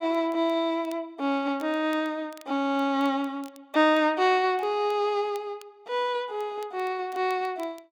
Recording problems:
crackle; vinyl, SNR 29 dB

